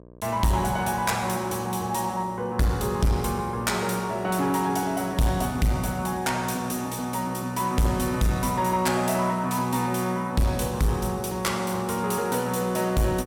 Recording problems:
distortion; soft clipping, signal-to-distortion ratio 10 dB
hum; 60 Hz, harmonics up to 1.2 kHz, SNR 24 dB

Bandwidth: 18 kHz